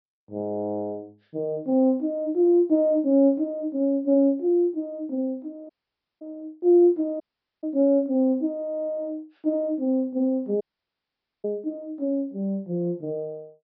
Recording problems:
low-pass filter; nothing above 5.5 kHz
audio cutting out; at 5.5 s for 0.5 s, at 7 s and at 11 s for 1 s

